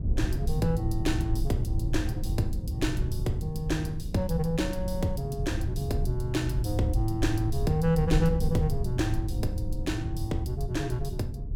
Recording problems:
rumble; below 98 Hz, SNR 2 dB
wind on the microphone; below 160 Hz, SNR 15 dB

